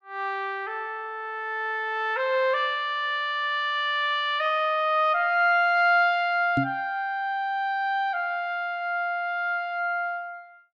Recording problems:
knock on the microphone; at 6.5 s; peak +2 dB vs average level

